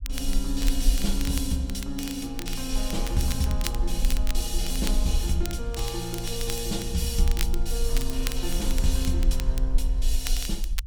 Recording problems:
rumble; below 42 Hz, SNR 1 dB
crackling; vinyl, SNR 9 dB

